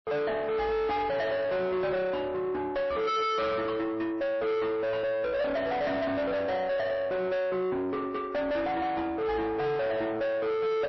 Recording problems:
lossy compression; MP3, log-spectral distance 2 dB, nothing above 5.7 kHz
distortion; soft clipping, signal-to-distortion ratio 5 dB

